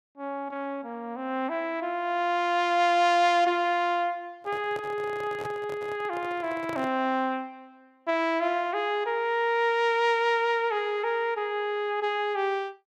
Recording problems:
microphone handling noise; from 4.5 to 7 s; peak -9 dB vs average level

